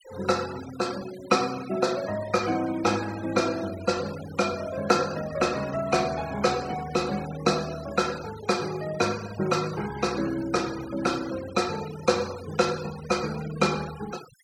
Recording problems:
noise reduction artefacts; signal-to-artefact ratio 15 dB

